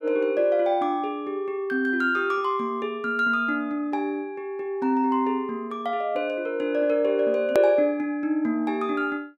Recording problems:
hard cut with a click; at 7.5 s

